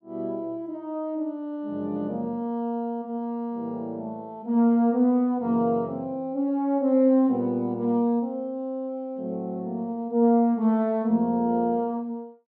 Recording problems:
none

